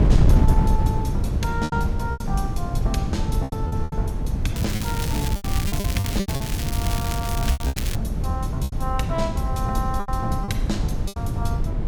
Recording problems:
wind noise; below 130 Hz, SNR -5 dB
lost packets; 10% of the sound replaced, filled with repeated pitch periods
crackle; from 4.5 to 8 s; loose cable, SNR 3 dB

